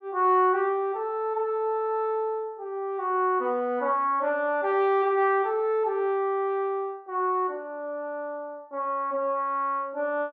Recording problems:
none

